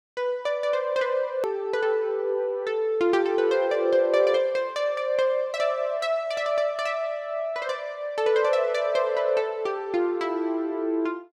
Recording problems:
hard cut with a click; at 1.5 s

